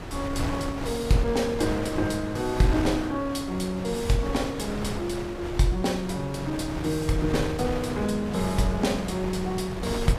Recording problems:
wind noise; below 790 Hz, SNR 6 dB

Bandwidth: 15.5 kHz